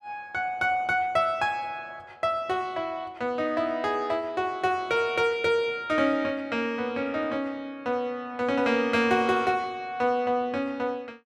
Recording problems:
none

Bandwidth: 14 kHz